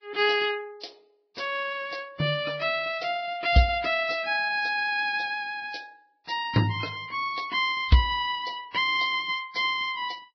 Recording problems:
treble missing; nothing above 5.5 kHz
lossy codec; Vorbis, log-spectral distance 4 dB

